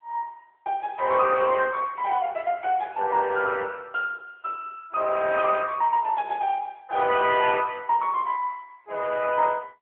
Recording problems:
phone line; 340 Hz to 3.4 kHz, AMR-NB

